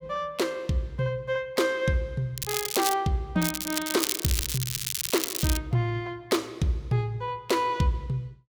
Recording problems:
crackling; at 2.5 s and from 3.5 to 5.5 s; loose cable, SNR 1 dB

